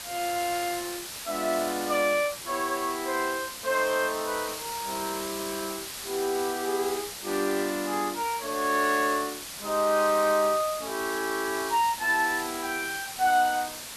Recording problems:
background hiss; slope +1 dB per octave, SNR 8 dB

